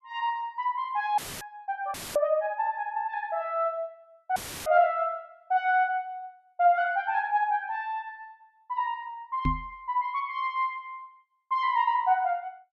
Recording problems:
audio cutting out; at 1 s, at 2 s and at 4.5 s; filled with static
knock on the microphone; at 9.5 s; peak +3 dB vs average level

